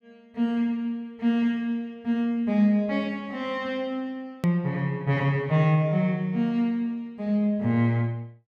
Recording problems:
edit click; at 4.5 s

